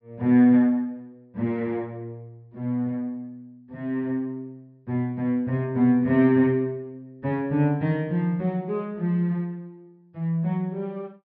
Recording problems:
treble missing; nothing above 5.5 kHz

